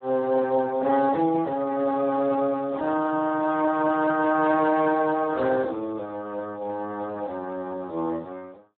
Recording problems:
telephone audio; 280 Hz to 2.1 kHz, Speex

